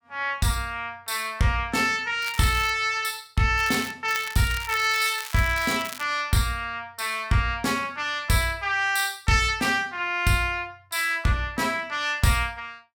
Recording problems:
crackling; at 2 s, at 3.5 s and from 4 to 6 s; loose cable, SNR 12 dB

